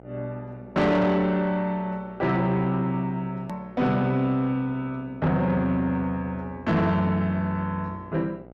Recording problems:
distortion; soft clipping, signal-to-distortion ratio 10 dB
hum; 60 Hz, harmonics up to 1.6 kHz, SNR 22 dB
hard cut with a click; at 3.5 s

